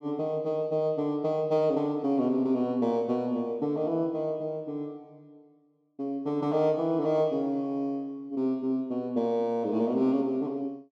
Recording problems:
none

